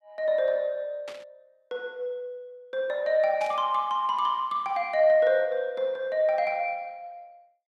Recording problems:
static burst; at 1 s and at 3.5 s; peak -12 dB vs average level

